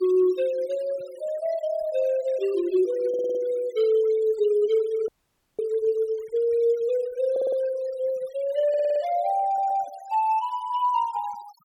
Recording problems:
denoising artefacts; signal-to-artefact ratio 24 dB
audio stuttering; 4 times, first at 3 s
frozen audio; at 5 s for 0.5 s

